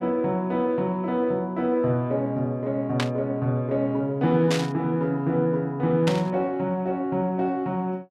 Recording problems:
burst of static; at 3 s, at 4.5 s and at 6 s; peak +1 dB vs average level

